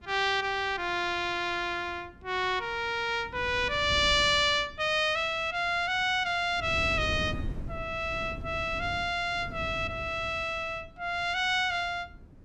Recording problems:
wind on the microphone; below 210 Hz, SNR 14 dB

